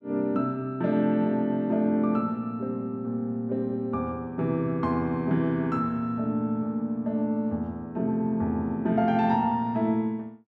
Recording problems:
none

